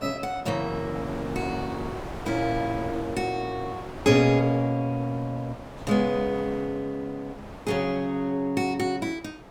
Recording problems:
wind on the microphone; below 960 Hz, SNR 12 dB

